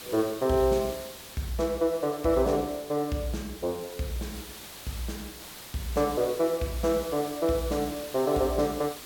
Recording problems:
background hiss; slope -1 dB per octave, SNR 14 dB

